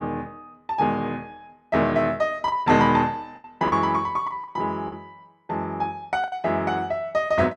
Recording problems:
packet loss; 5% of the sound replaced, filled with the last packet

